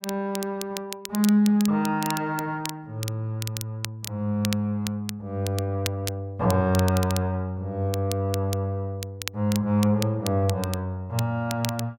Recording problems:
crackling; vinyl, SNR 11 dB

